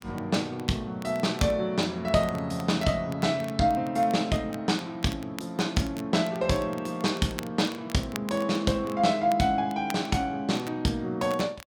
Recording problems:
crackling; vinyl, SNR 19 dB

